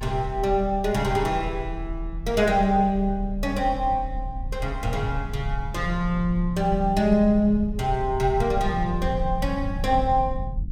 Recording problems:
low-frequency rumble; below 66 Hz, strongest tone 38 Hz, SNR 9 dB

